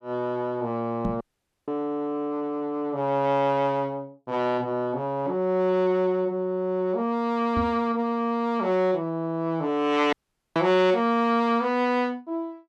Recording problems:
knock on the microphone; at 1 s and at 7.5 s; peak 0 dB vs average level
audio cutting out; at 1 s and at 10 s

